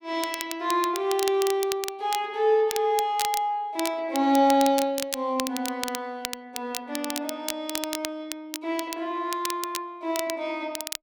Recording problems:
crackle; vinyl, SNR 8 dB

